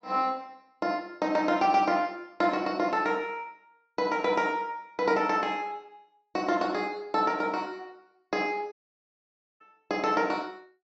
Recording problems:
treble cut off; nothing above 8 kHz
audio cutting out; at 8.5 s for 1 s

